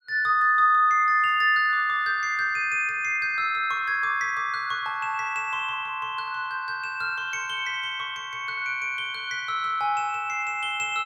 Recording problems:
none

